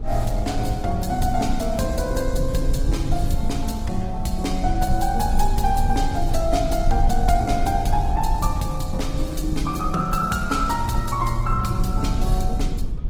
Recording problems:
lossy compression; Opus, log-spectral distance 3 dB
low-frequency rumble; below 60 Hz, strongest tone 24 Hz, SNR 3 dB

